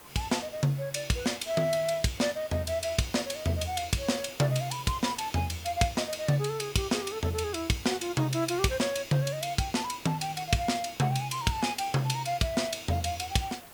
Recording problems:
background hiss; slope -4 dB per octave, SNR 19 dB

